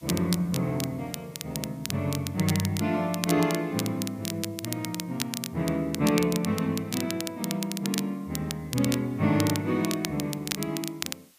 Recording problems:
background hiss; slope +1 dB per octave, SNR 28 dB
crackling; vinyl, SNR 7 dB

